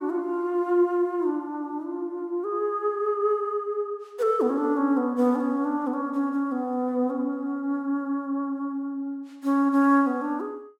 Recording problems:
none

